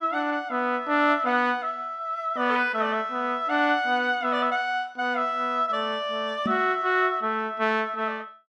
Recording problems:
knock on the microphone; at 6.5 s; peak 0 dB vs average level

